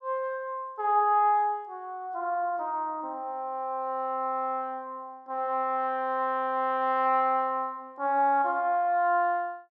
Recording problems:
none

